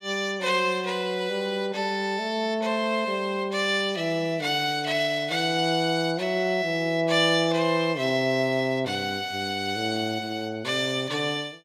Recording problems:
none

